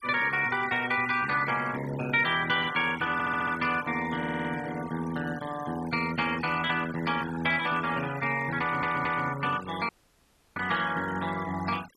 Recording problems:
denoising artefacts; signal-to-artefact ratio 14 dB
stutter; at 3 s, at 4 s and at 8.5 s
dropout; at 10 s for 0.5 s

